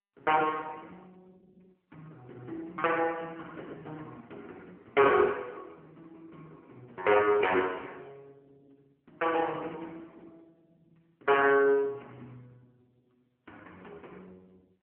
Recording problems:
phone line; 320 Hz to 3.1 kHz, AMR-NB

